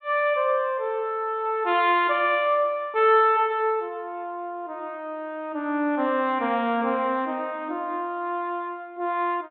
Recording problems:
treble cut off; nothing above 4 kHz

